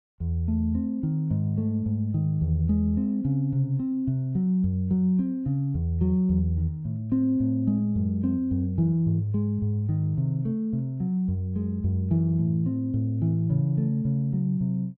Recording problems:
none

